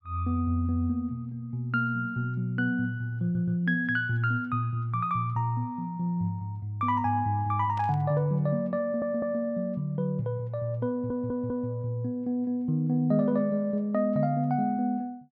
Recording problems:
audio stuttering; at 3 s, at 9 s and at 11 s
burst of static; at 8 s; peak -15 dB vs average level

